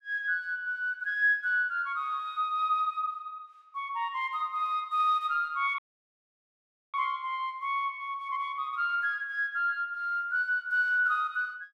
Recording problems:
audio cutting out; at 6 s for 1 s

